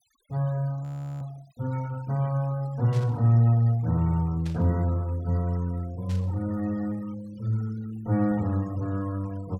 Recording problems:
noise reduction artefacts; signal-to-artefact ratio 24 dB
audio freezing; at 1 s
static burst; at 3 s, at 4.5 s and at 6 s; peak -14 dB vs average level

